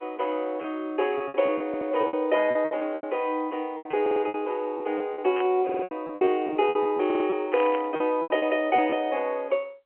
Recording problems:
phone line; 320 Hz to 3.2 kHz, G.711
packet loss; 13% of the sound replaced, filled with repeated pitch periods
audio stuttering; 4 times, first at 1.5 s
static burst; at 5.5 s and at 7.5 s; peak -6 dB vs average level

